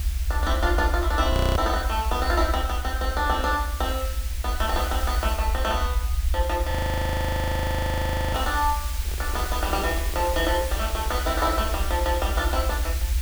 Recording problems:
background hiss; slope +1 dB per octave, SNR 9 dB
rumble; below 72 Hz, SNR 1 dB
frozen audio; at 1.5 s and at 6.5 s for 1.5 s
microphone handling noise; from 9 to 12 s; peak -6 dB vs average level

